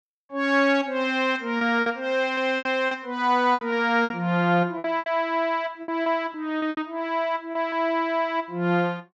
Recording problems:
lost packets; 9% of the sound replaced, filled with repeated pitch periods

